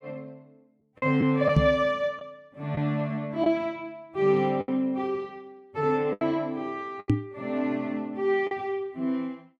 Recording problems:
packet loss; 5% of the sound replaced, filled with the last packet
knock on the microphone; at 1.5 s and at 7 s; peak +9 dB vs average level

